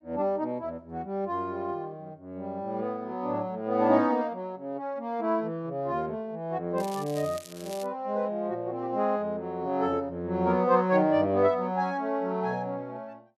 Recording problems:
crackling; from 7 to 8 s; loose cable, SNR 17 dB

